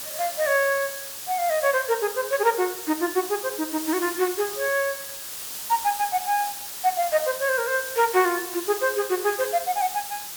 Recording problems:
hiss; slope +1 dB per octave, SNR 7 dB

